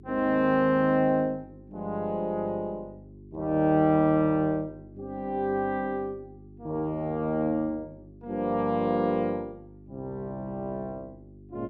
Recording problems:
hum; 50 Hz, harmonics up to 400 Hz, SNR 22 dB

